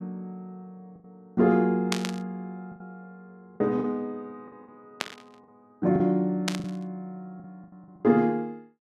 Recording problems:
packet loss; 7% of the sound replaced, filled with the last packet
static burst; at 2 s, at 5 s and at 6.5 s; peak +3 dB vs average level

